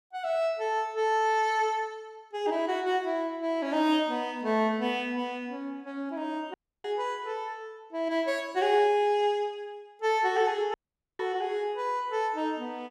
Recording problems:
audio cutting out; at 6.5 s and at 11 s

